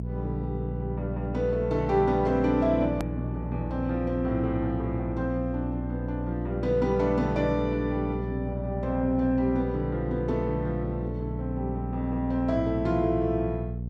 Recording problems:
mains hum; 60 Hz, harmonics up to 480 Hz, SNR 5 dB
hard cut with a click; at 3 s

